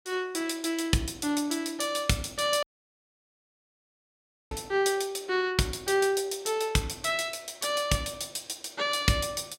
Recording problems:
dropout; at 2.5 s for 2 s

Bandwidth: 16 kHz